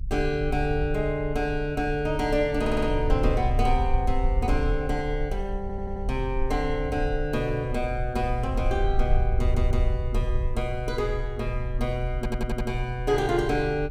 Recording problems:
rumble; below 60 Hz, SNR 3 dB
audio stuttering; 4 times, first at 2.5 s

